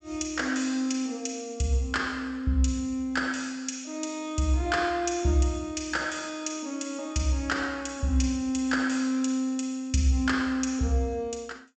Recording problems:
low-pass filter; nothing above 8 kHz

